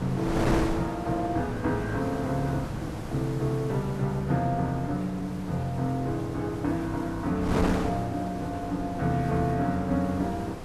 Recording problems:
background hiss; slope -1 dB per octave, SNR 24 dB
wind on the microphone; below 840 Hz, SNR 7 dB

